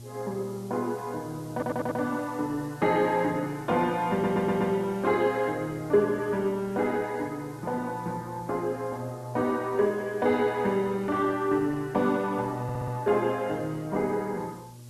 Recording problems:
codec artefacts; Opus, log-spectral distance 2 dB
mains hum; 60 Hz, harmonics up to 840 Hz, SNR 19 dB
background hiss; SNR 26 dB
stutter; at 1.5 s, at 4 s and at 13 s

